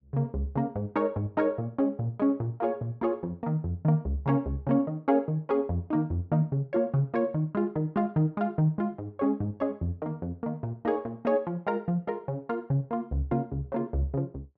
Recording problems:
none

